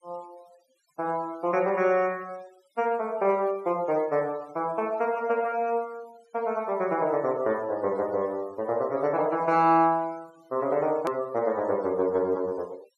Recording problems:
denoising artefacts; signal-to-artefact ratio 26 dB
edit click; at 11 s

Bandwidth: 12.5 kHz